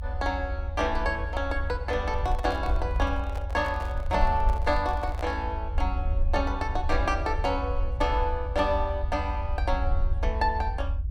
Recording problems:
rumble; below 76 Hz, SNR 2 dB
microphone handling noise; from 2 to 5.5 s; peak -5 dB vs average level

